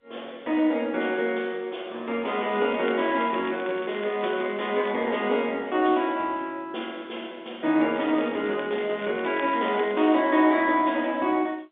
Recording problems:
phone line; 240 Hz to 3.6 kHz, G.711
crackling; from 2 to 5 s and from 8 to 10 s; loose cable, SNR 18 dB

